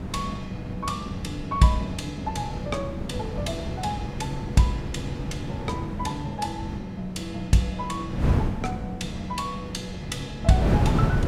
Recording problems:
wind on the microphone; below 250 Hz, SNR 2 dB

